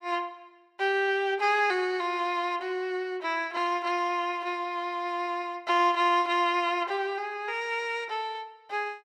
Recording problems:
none

